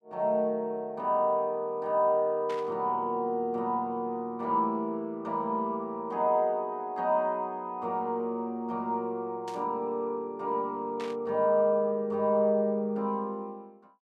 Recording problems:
burst of static; at 2.5 s, at 9.5 s and at 11 s; peak -10 dB vs average level

